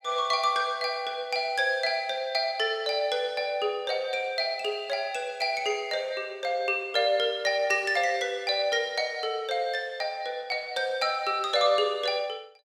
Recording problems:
none

